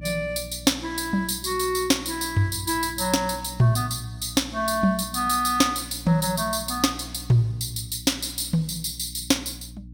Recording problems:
hum; 60 Hz, harmonics up to 300 Hz, SNR 18 dB

